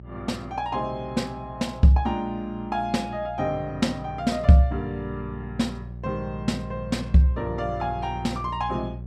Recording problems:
electrical hum; 60 Hz, harmonics up to 540 Hz, SNR 13 dB

